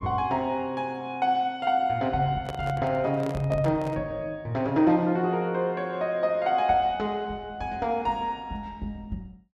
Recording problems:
handling noise; from 2.5 to 4 s; peak -5 dB vs average level

